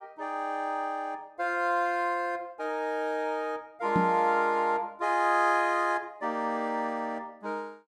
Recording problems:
microphone thump; at 4 s; peak +4 dB vs average level

